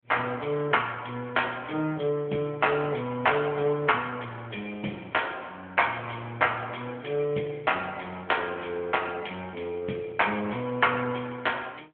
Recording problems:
phone line; 190 Hz to 3.3 kHz, AMR-NB

